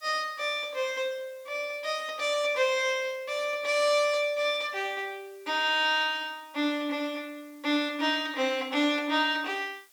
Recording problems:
background hiss; slope +2 dB per octave, SNR 29 dB

